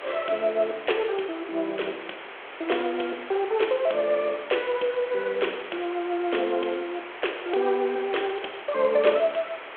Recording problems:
telephone audio; 320 Hz to 3.5 kHz, G.726
background hiss; SNR 12 dB

